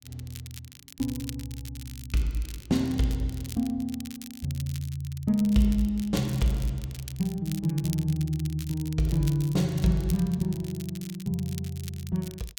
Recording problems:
crackle; vinyl, SNR 16 dB

